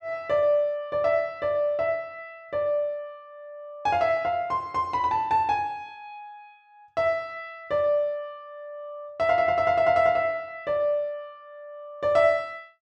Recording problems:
none

